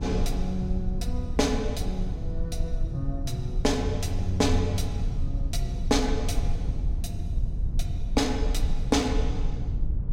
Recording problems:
low-frequency rumble; below 78 Hz, SNR 1 dB

